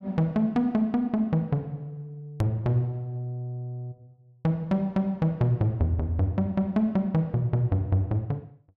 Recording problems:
hard cut with a click; at 2.5 s

